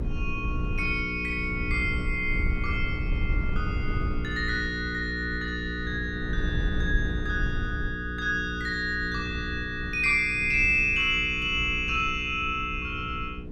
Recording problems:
mains hum; 60 Hz, harmonics up to 480 Hz, SNR 9 dB
wind noise; below 92 Hz, SNR 7 dB

